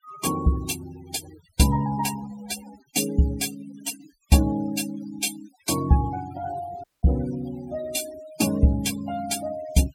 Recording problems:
noise reduction artefacts; signal-to-artefact ratio 13 dB
audio cutting out; at 7 s

